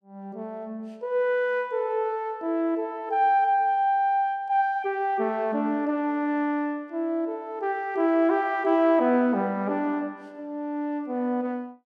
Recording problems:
none

